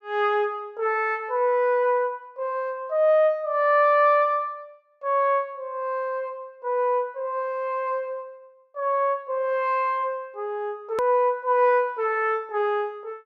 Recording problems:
click at an edit; at 11 s

